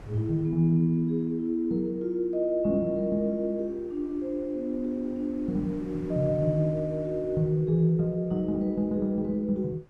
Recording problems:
wind noise; below 480 Hz, SNR 24 dB

